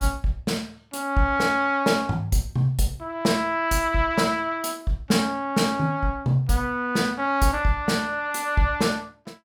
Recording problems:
none

